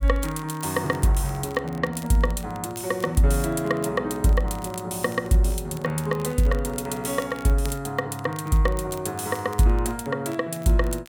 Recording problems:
crackle; vinyl, SNR 23 dB

